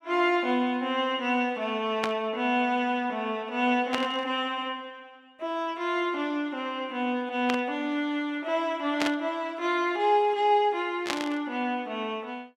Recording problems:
static burst; 5 times, first at 2 s; peak +3 dB vs average level

